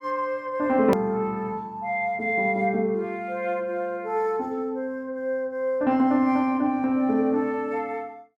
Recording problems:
click at an edit; at 1 s

